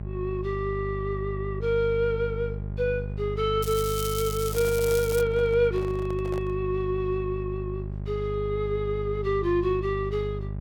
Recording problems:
hum; 50 Hz, harmonics up to 600 Hz, SNR 6 dB
crackling; from 3.5 to 5 s; loose cable, SNR 8 dB
handling noise; from 4.5 to 6.5 s; peak -8 dB vs average level

